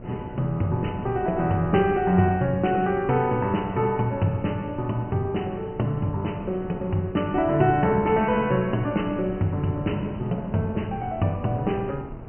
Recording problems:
treble cut off; nothing above 3 kHz
hum; 60 Hz, harmonics up to 1.1 kHz, SNR 24 dB
wind noise; below 360 Hz, SNR 16 dB

